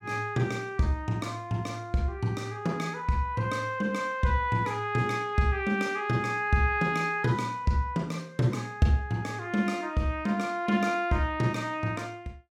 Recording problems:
none

